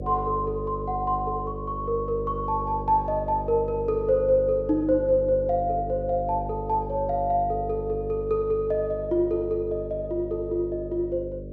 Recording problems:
hum; 50 Hz, harmonics up to 600 Hz, SNR 10 dB

